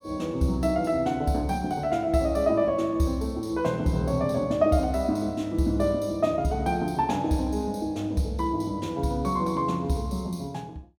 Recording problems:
none

